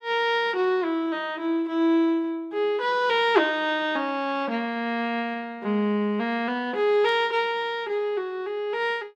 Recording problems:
static burst; at 7 s; peak -16 dB vs average level

